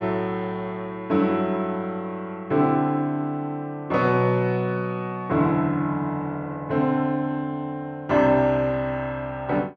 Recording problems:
none

